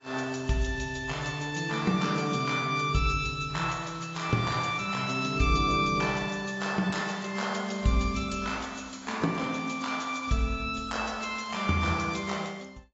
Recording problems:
lossy compression; AAC, log-spectral distance 5 dB, nothing above 7.3 kHz

